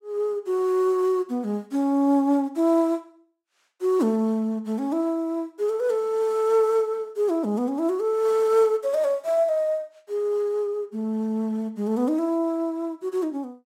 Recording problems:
none

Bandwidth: 16 kHz